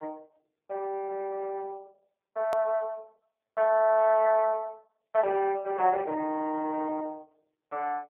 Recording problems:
phone line; 220 Hz to 2.7 kHz, AMR-NB
edit click; at 2.5 s

